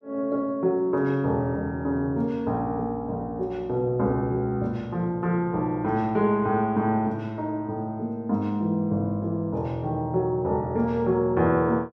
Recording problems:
none

